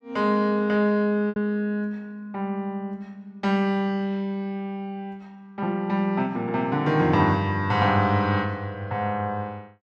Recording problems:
packet loss; 0.8% of the sound replaced, filled with repeated pitch periods

